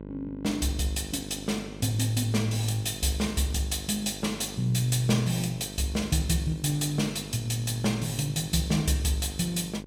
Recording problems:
hum; 50 Hz, harmonics up to 1.1 kHz, SNR 14 dB

